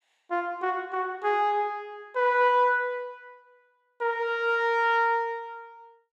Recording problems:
none

